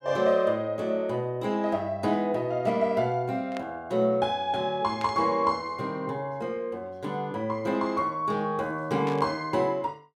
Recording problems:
static burst; at 3.5 s, at 5 s and at 9 s; peak -8 dB vs average level

